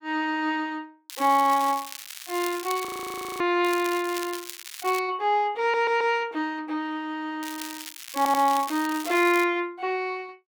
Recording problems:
crackle; from 1 to 3 s, from 3.5 to 5 s and from 7.5 to 9.5 s; loose cable, SNR 12 dB
frozen audio; at 3 s for 0.5 s
stutter; at 5.5 s and at 8 s

